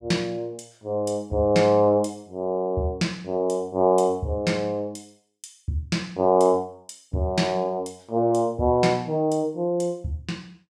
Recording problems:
none

